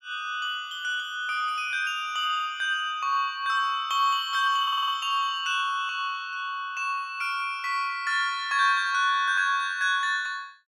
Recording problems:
audio stuttering; at 4.5 s

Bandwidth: 16 kHz